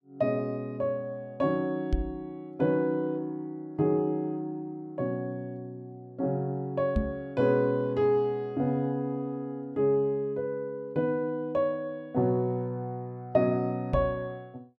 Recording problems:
microphone bump; at 2 s, at 7 s and at 14 s; peak +5 dB vs average level

